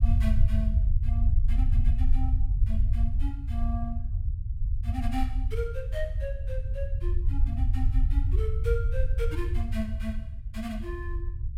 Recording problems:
rumble; below 74 Hz, SNR -9 dB

